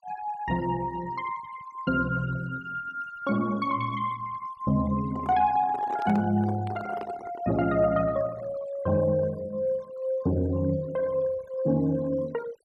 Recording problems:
noise reduction artefacts; signal-to-artefact ratio 21 dB
handling noise; from 5 to 7.5 s; peak -6 dB vs average level

